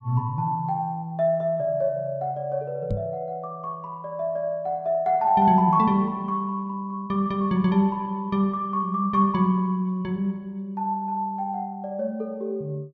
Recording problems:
microphone bump; at 3 s; peak 0 dB vs average level

